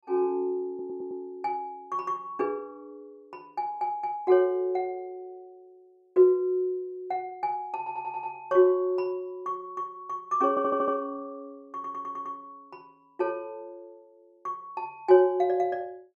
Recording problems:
audio stuttering; 4 times, first at 0.5 s

